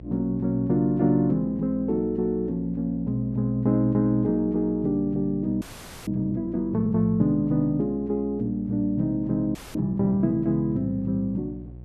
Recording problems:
electrical hum; 60 Hz, harmonics up to 540 Hz, SNR 18 dB
audio freezing; at 5.5 s and at 9.5 s

